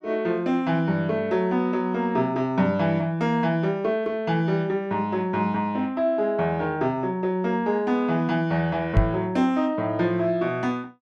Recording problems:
microphone thump; at 9 s; peak +8 dB vs average level

